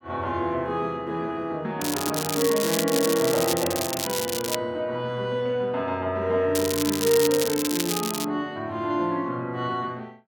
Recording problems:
crackle; from 2 to 4.5 s and from 6.5 to 8.5 s; loose cable, SNR 3 dB

